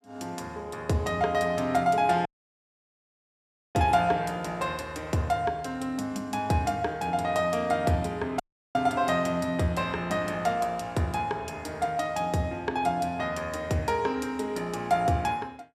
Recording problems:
audio cutting out; at 2.5 s for 1.5 s and at 8.5 s

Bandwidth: 14.5 kHz